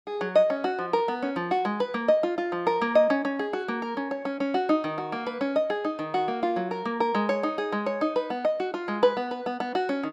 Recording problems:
none

